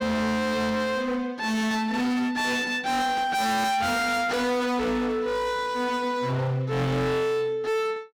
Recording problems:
distorted audio; hard clipping, signal-to-distortion ratio 6 dB

